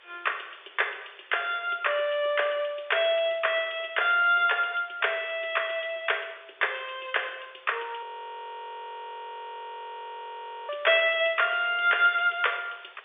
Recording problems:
telephone audio; 370 Hz to 3.6 kHz, G.711
hiss; SNR 27 dB
frozen audio; at 8 s for 2.5 s

